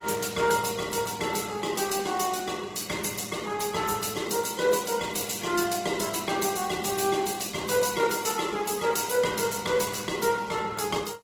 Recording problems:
lossy codec; Opus, log-spectral distance 7 dB

